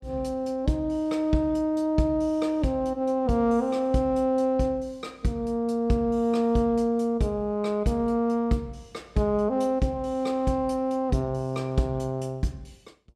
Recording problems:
none

